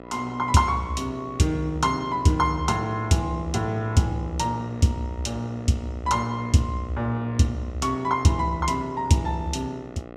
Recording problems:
mains hum; 60 Hz, harmonics up to 2 kHz, SNR 16 dB

